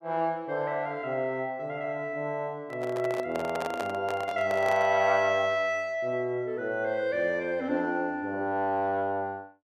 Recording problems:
handling noise; from 2.5 to 5 s; peak -1 dB vs average level

